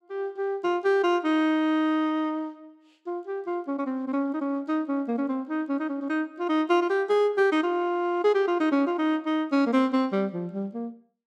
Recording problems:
none

